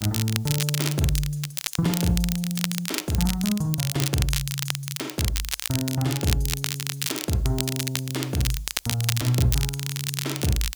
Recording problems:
hiss; SNR 25 dB
crackle; vinyl, SNR 3 dB

